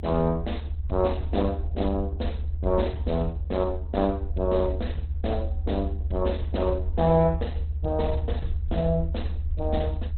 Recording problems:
codec artefacts; Opus, log-spectral distance 3 dB, nothing above 4.1 kHz
low-frequency rumble; below 76 Hz, strongest tone 74 Hz, SNR 3 dB

